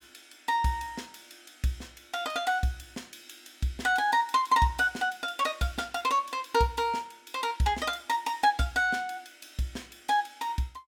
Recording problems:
none

